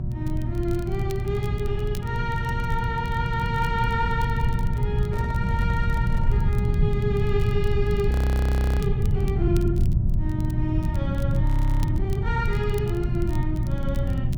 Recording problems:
hum; 60 Hz, harmonics up to 720 Hz, SNR 3 dB
rumble; below 130 Hz, SNR -4 dB
crackling; vinyl, SNR 20 dB
handling noise; from 5 to 6.5 s; peak -10 dB vs average level
frozen audio; at 8 s for 0.5 s and at 11 s

